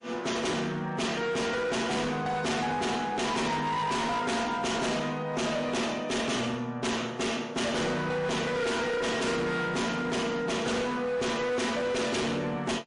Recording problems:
codec artefacts; MP3, log-spectral distance 3 dB, nothing above 10.4 kHz
distorted audio; hard clipping, signal-to-distortion ratio 7 dB

